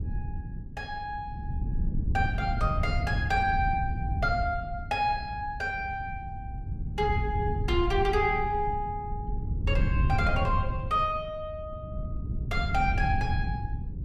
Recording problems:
wind noise; below 120 Hz, SNR 2 dB

